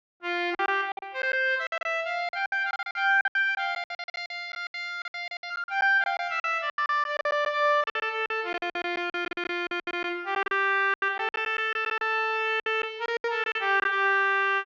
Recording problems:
low-pass filter; nothing above 7.3 kHz
packet loss; 18% of the sound replaced, filled with silence

